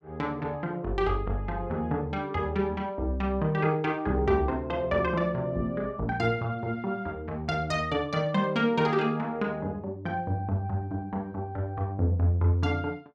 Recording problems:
none

